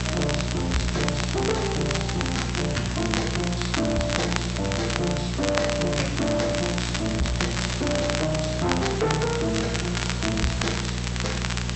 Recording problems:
treble missing; nothing above 8 kHz
distorted audio; soft clipping, signal-to-distortion ratio 12 dB
hum; 60 Hz, harmonics up to 660 Hz, SNR 3 dB
hiss; slope -2 dB per octave, SNR 7 dB
crackle; vinyl, SNR 4 dB

